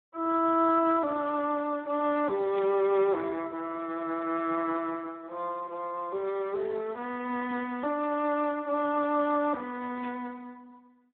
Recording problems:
telephone audio; 300 Hz to 2.6 kHz, Speex
static burst; at 2.5 s and at 10 s; peak -8 dB vs average level

